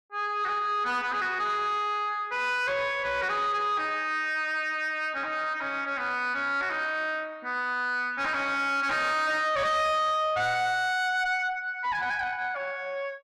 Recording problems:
distorted audio; soft clipping, signal-to-distortion ratio 8 dB

